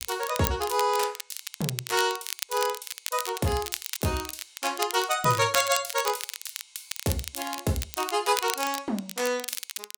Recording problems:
crackling; vinyl, SNR 7 dB

